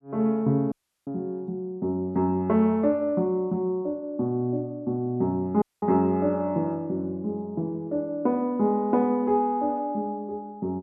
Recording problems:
dropout; at 0.5 s and at 5.5 s

